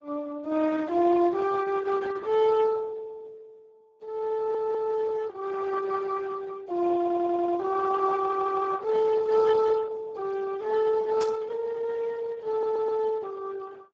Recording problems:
codec artefacts; Opus, then Speex, log-spectral distance 3 dB
stutter; 4 times, first at 4.5 s
static burst; at 11 s; peak -12 dB vs average level

